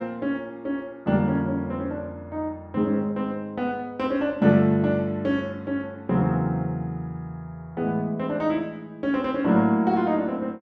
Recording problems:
none

